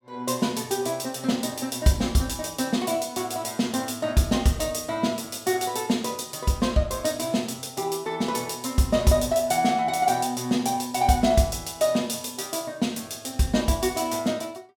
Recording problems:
none

